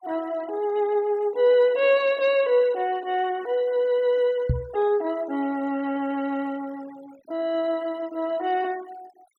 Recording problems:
noise reduction artefacts; signal-to-artefact ratio 24 dB
knock on the microphone; at 4.5 s; peak +4 dB vs average level

